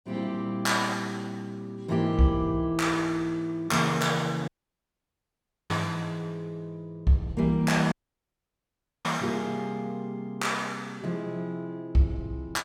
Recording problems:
dropout; at 4.5 s for 1 s and at 8 s for 1 s

